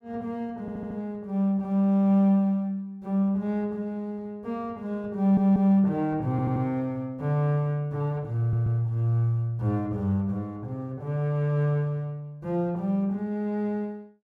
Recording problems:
stutter; 4 times, first at 0.5 s

